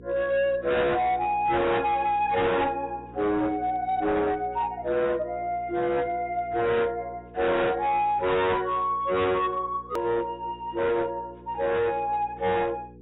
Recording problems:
lossy codec; AAC, log-spectral distance 2 dB
distorted audio; hard clipping, signal-to-distortion ratio 7 dB
hum; 60 Hz, harmonics up to 480 Hz, SNR 22 dB
hard cut with a click; at 10 s

